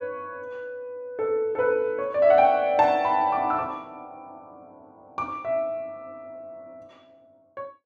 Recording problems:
none

